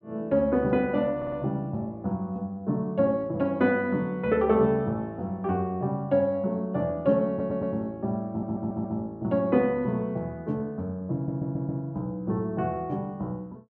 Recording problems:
audio stuttering; 4 times, first at 1 s

